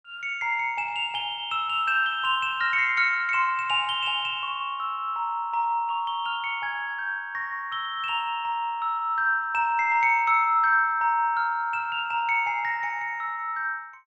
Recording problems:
none

